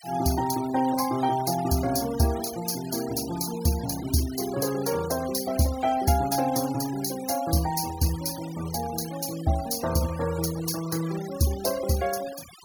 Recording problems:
noise reduction artefacts; signal-to-artefact ratio 15 dB

